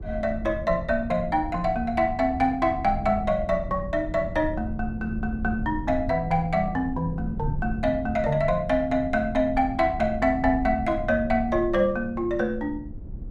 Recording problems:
low-frequency rumble; below 130 Hz, SNR 11 dB

